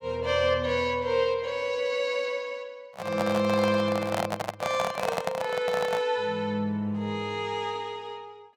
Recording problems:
microphone handling noise; from 3 to 6 s; peak +3 dB vs average level

